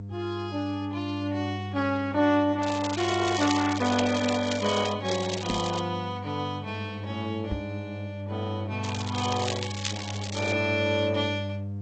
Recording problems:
codec artefacts; AAC, then G.722, log-spectral distance 7 dB
mains hum; 50 Hz, harmonics up to 500 Hz, SNR 8 dB
crackling; from 2.5 to 5 s, at 5 s and from 9 to 11 s; loose cable, SNR 8 dB
knock on the microphone; at 5.5 s and at 7.5 s; peak 0 dB vs average level

